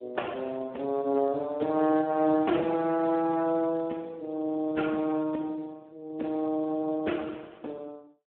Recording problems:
phone line; 240 Hz to 3.4 kHz, Speex

